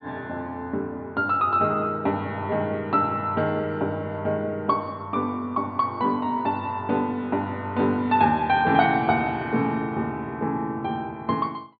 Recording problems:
low-pass filter; nothing above 4.6 kHz

